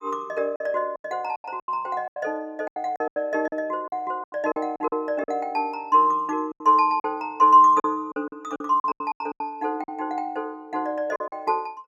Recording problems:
packet loss; 13% of the sound replaced, filled with silence

